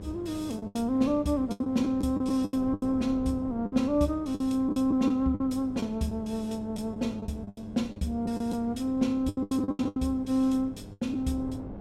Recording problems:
electrical hum; 50 Hz, harmonics up to 1.1 kHz, SNR 18 dB
wind on the microphone; below 330 Hz, SNR 18 dB
packet loss; 12% of the sound replaced, filled with the last packet

